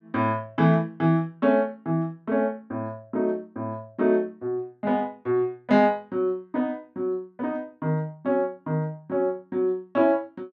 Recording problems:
none

